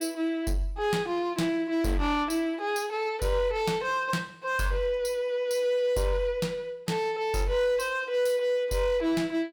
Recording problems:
distorted audio; hard clipping, signal-to-distortion ratio 12 dB

